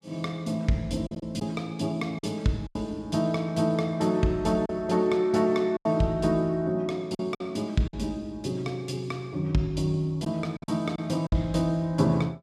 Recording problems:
packet loss; 5% of the sound replaced, filled with silence

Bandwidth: 14.5 kHz